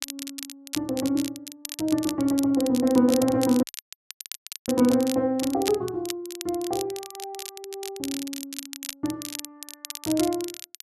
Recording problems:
crackling; vinyl, SNR 11 dB
dropout; at 3.5 s for 1 s

